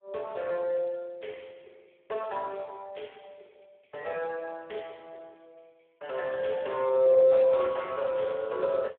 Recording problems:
phone line; 340 Hz to 3.4 kHz, Speex

